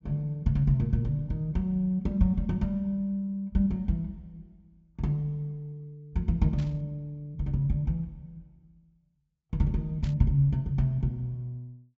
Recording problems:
treble cut off; nothing above 8 kHz
static burst; at 6.5 s and at 10 s; peak -14 dB vs average level

